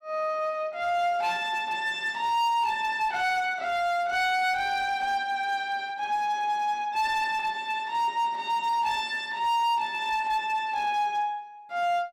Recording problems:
distorted audio; hard clipping, signal-to-distortion ratio 12 dB

